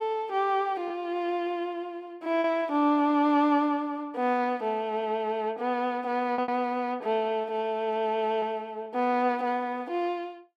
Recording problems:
lost packets; 2% of the sound replaced, filled with repeated pitch periods

